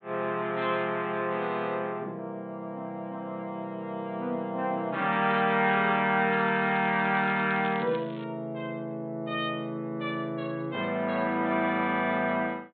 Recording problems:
treble missing; nothing above 4 kHz
crackling; from 6.5 to 8 s; loose cable, SNR 20 dB

